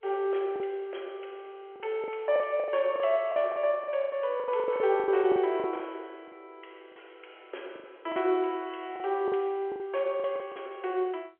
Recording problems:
phone line; 320 Hz to 3.3 kHz, G.711
packet loss; 12% of the sound replaced, filled with the last packet

